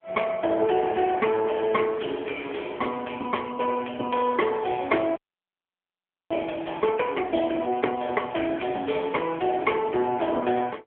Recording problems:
phone line; 220 Hz to 3.2 kHz, AMR-NB
crackling; from 1 to 3.5 s, from 4.5 to 7 s and from 7.5 to 10 s; loose cable, SNR 23 dB
audio freezing; at 5 s for 1 s

